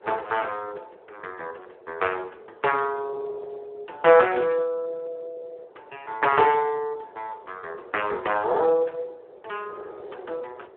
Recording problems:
telephone audio; 340 Hz to 3.2 kHz, Speex
wind on the microphone; below 630 Hz, SNR 22 dB

